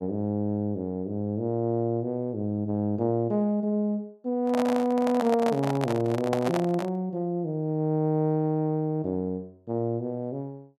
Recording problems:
microphone handling noise; from 4.5 to 7 s; peak +1 dB vs average level

